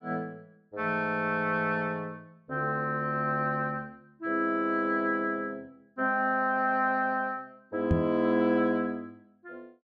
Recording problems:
microphone bump; at 8 s; peak +6 dB vs average level

